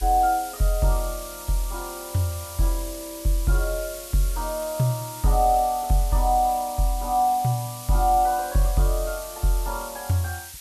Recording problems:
hiss; slope +5 dB per octave, SNR 12 dB

